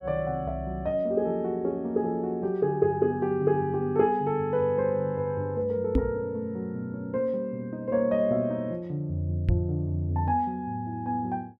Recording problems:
microphone thump; at 6 s and at 9.5 s; peak +7 dB vs average level

